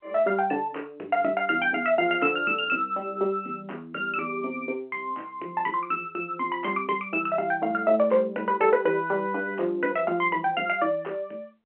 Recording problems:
telephone audio; 240 Hz to 3.1 kHz, G.711

